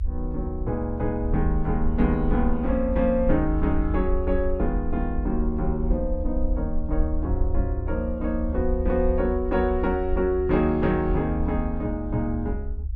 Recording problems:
rumble; below 72 Hz, SNR 4 dB

